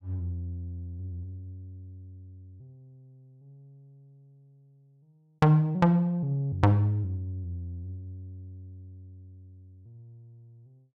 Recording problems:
none

